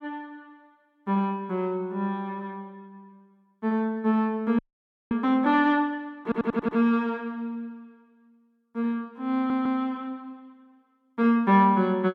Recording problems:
frozen audio; at 4.5 s for 0.5 s
stutter; at 6 s and at 9.5 s

